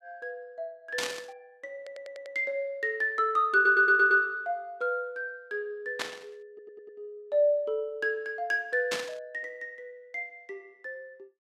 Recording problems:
burst of static; at 1 s, at 6 s and at 9 s; peak 0 dB vs average level
stutter; at 2 s, at 3.5 s and at 6.5 s

